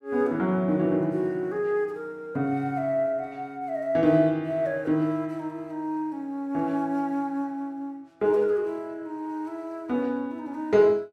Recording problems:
none

